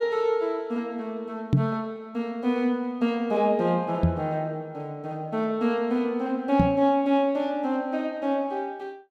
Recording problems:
microphone thump; at 1.5 s, at 4 s and at 6.5 s; peak +9 dB vs average level

